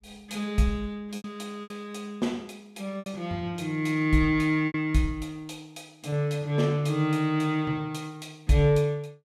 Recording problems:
packet loss; 4% of the sound replaced, filled with repeated pitch periods

